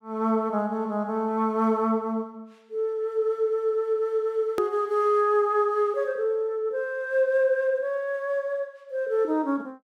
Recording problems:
click at an edit; at 4.5 s

